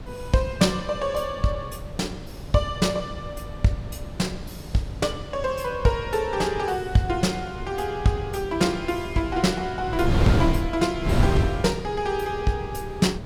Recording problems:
wind on the microphone; below 240 Hz, SNR 6 dB

